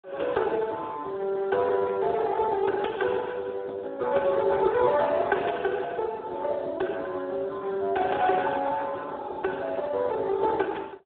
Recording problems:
phone line; 300 Hz to 3.7 kHz, Speex

